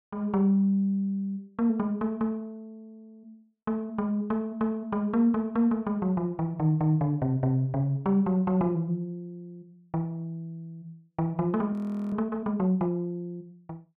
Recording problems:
frozen audio; at 12 s

